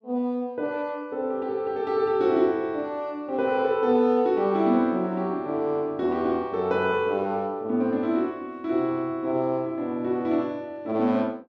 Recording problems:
none

